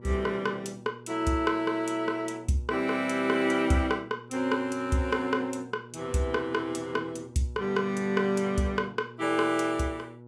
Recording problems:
hum; 60 Hz, harmonics up to 960 Hz, SNR 20 dB

